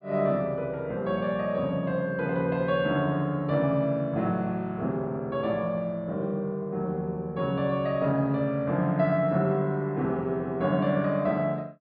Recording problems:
treble cut off; nothing above 4.7 kHz

